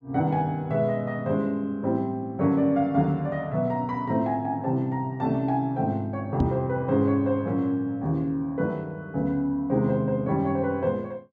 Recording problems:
microphone thump; at 6.5 s; peak +5 dB vs average level

